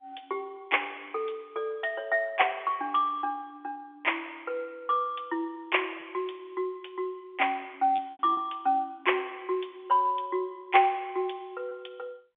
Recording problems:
telephone audio; 240 Hz to 3.5 kHz, G.711
lost packets; 1.6% of the sound replaced, filled with repeated pitch periods

